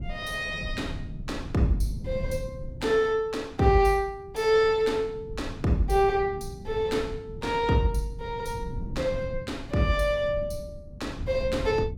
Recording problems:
rumble; below 150 Hz, SNR 12 dB

